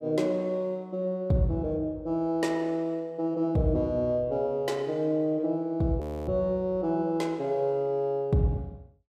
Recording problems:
audio freezing; at 6 s

